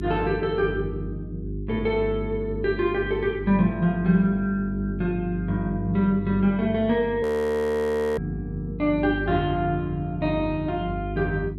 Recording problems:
hum; 50 Hz, harmonics up to 400 Hz, SNR 9 dB
audio freezing; at 7 s for 1 s

